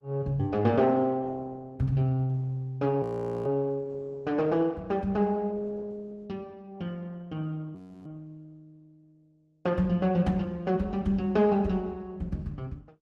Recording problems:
codec artefacts; Opus, log-spectral distance 2 dB, nothing above 12 kHz
audio freezing; at 3 s and at 8 s

